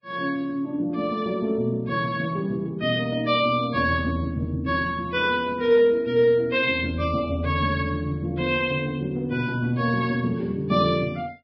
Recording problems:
lossy compression; Vorbis, log-spectral distance 2 dB

